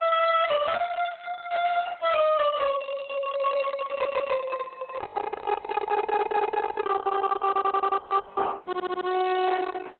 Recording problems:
lossy codec; AAC, then Opus, log-spectral distance 5 dB, nothing above 3.7 kHz
distortion; soft clipping, signal-to-distortion ratio 9 dB
stutter; 4 times, first at 4 s

